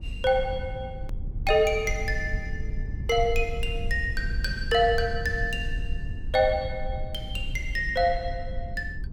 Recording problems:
low-frequency rumble; below 76 Hz, SNR 7 dB
edit click; at 1 s

